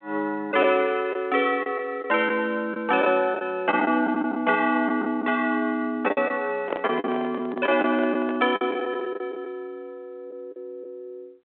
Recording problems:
phone line; 260 Hz to 3.4 kHz, G.726
lost packets; 7% of the sound replaced, filled with the last packet
handling noise; from 6.5 to 8.5 s; peak -1 dB vs average level

